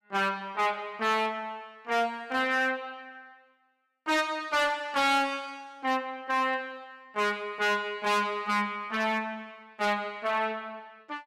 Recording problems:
distortion; hard clipping, uneven, signal-to-distortion ratio 12 dB

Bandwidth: 14.5 kHz